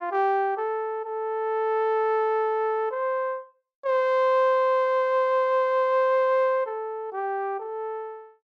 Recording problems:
none

